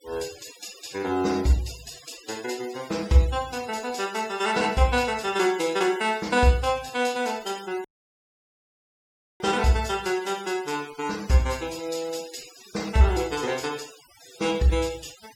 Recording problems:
denoising artefacts; signal-to-artefact ratio 18 dB
dropout; at 8 s for 1.5 s

